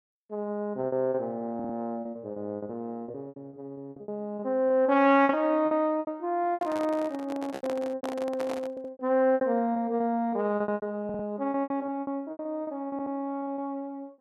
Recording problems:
lost packets; 16% of the sound replaced, filled with repeated pitch periods
stutter; 4 times, first at 1.5 s
microphone handling noise; from 6.5 to 9 s; peak -4 dB vs average level

